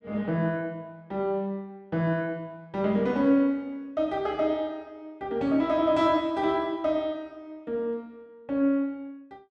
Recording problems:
none

